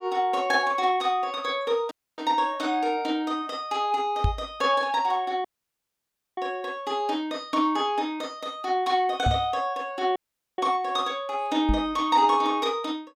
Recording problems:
dropout; at 2 s, at 5.5 s for 1 s and at 10 s
microphone thump; at 4 s, at 9.5 s and at 12 s; peak +5 dB vs average level

